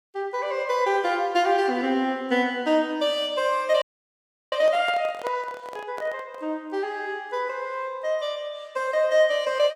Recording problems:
frozen audio; at 4 s for 0.5 s
handling noise; from 4.5 to 6.5 s; peak -5 dB vs average level

